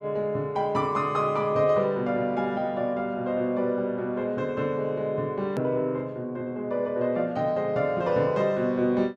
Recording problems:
edit click; at 5.5 s

